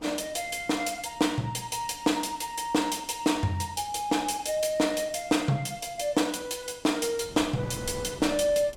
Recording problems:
wind noise; below 510 Hz, SNR 20 dB

